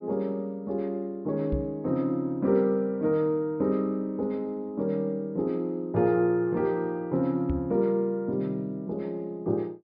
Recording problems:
treble cut off; nothing above 5.5 kHz
microphone thump; at 1.5 s and at 7.5 s; peak +1 dB vs average level

